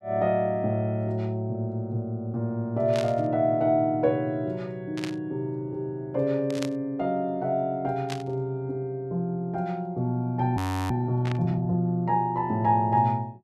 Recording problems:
static burst; 5 times, first at 3 s; peak -4 dB vs average level
frozen audio; at 11 s

